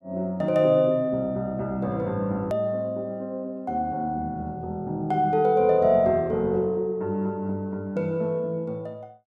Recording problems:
edit click; at 2.5 s

